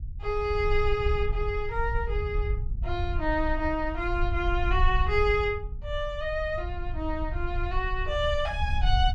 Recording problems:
rumble; below 68 Hz, SNR 3 dB

